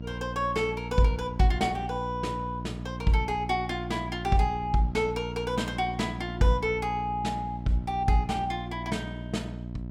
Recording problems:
hum; 60 Hz, harmonics up to 720 Hz, SNR 8 dB

